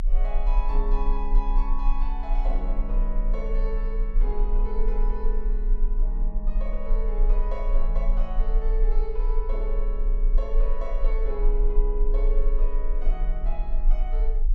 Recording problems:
rumble; below 32 Hz, strongest tone 30 Hz, SNR -9 dB

